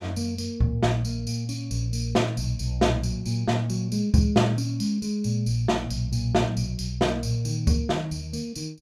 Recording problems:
none

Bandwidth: 15.5 kHz